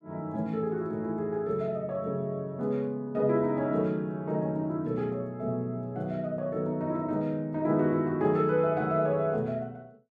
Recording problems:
none

